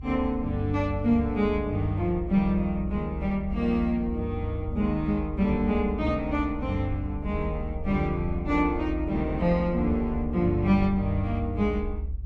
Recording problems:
rumble; below 72 Hz, SNR 8 dB

